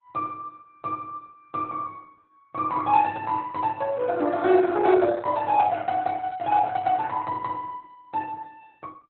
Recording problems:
codec artefacts; Opus, log-spectral distance 3 dB, nothing above 3.9 kHz

